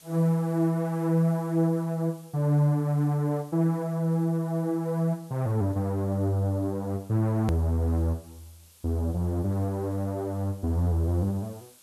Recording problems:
background hiss; SNR 27 dB
edit click; at 7.5 s

